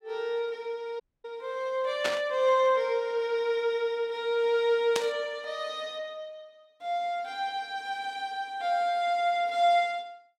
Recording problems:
dropout; at 1 s
burst of static; at 2 s and at 5 s; peak +2 dB vs average level

